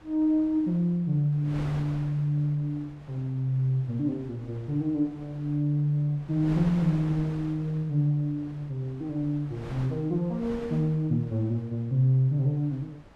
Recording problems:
wind on the microphone; below 820 Hz, SNR 18 dB

